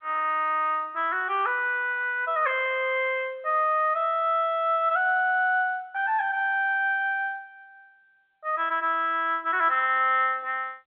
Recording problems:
phone line; 340 Hz to 3.4 kHz, G.711

